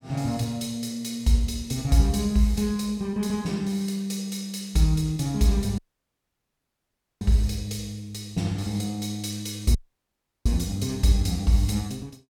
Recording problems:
audio cutting out; at 6 s for 1.5 s and at 10 s for 0.5 s

